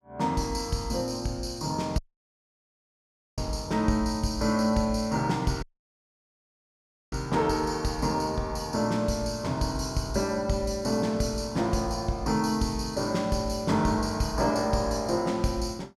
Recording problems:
audio cutting out; at 2 s for 1.5 s and at 5.5 s for 1.5 s

